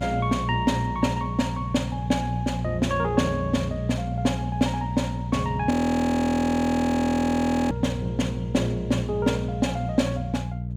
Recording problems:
hum; 60 Hz, harmonics up to 420 Hz, SNR 6 dB
audio freezing; at 5.5 s for 2 s

